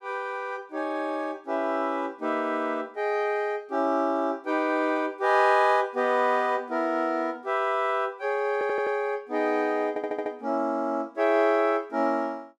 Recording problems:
stutter; at 8.5 s and at 10 s

